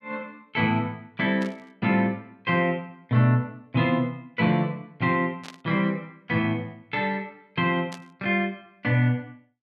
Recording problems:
static burst; at 1.5 s, at 5.5 s and at 8 s; peak -10 dB vs average level

